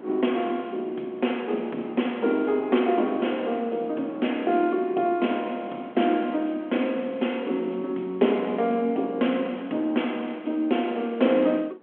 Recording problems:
telephone audio; 220 Hz to 3.4 kHz, G.726
wind noise; below 600 Hz, SNR 22 dB

